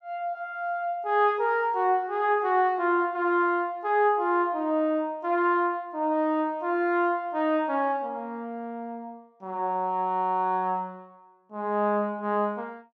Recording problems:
none

